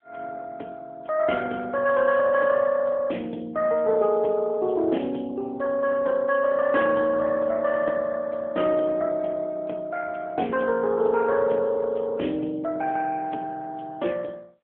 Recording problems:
telephone audio; 260 Hz to 3.8 kHz, AMR-NB

